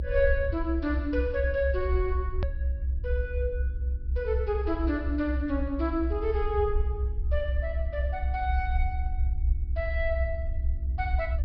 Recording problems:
low-pass filter; nothing above 5.5 kHz
electrical hum; 50 Hz, harmonics up to 350 Hz, SNR 22 dB
low-frequency rumble; below 68 Hz, strongest tone 62 Hz, SNR 0 dB
edit click; at 2.5 s

